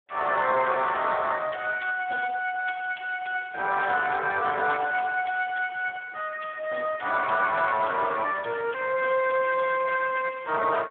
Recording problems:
telephone audio; 320 Hz to 3.4 kHz, Speex

